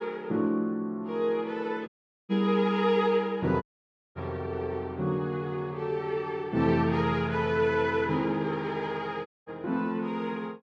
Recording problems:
dropout; at 2 s, at 3.5 s for 0.5 s and at 9.5 s

